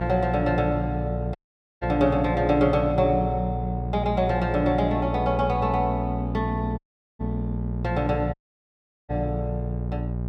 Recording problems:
electrical hum; 60 Hz, harmonics up to 660 Hz, SNR 4 dB
audio cutting out; at 1.5 s, at 7 s and at 8.5 s for 0.5 s

